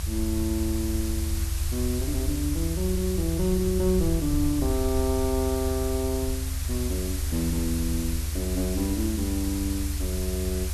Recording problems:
background hiss; slope +1 dB per octave, SNR 7 dB
rumble; below 78 Hz, SNR 1 dB

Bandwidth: 13 kHz